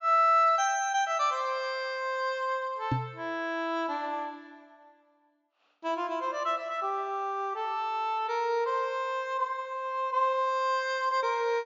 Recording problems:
low-pass filter; nothing above 7.3 kHz
microphone thump; at 3 s; peak +3 dB vs average level

